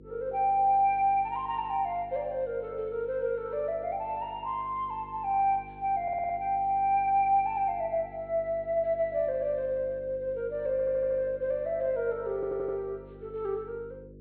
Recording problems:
treble cut off; nothing above 4.4 kHz
hum; 50 Hz, harmonics up to 500 Hz, SNR 21 dB
stutter; at 6 s, at 11 s and at 12 s

